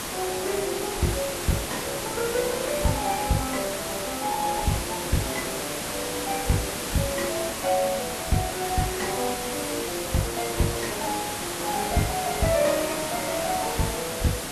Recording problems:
codec artefacts; Vorbis, log-spectral distance 14 dB, nothing above 12.3 kHz
background hiss; slope -3 dB per octave, SNR 2 dB

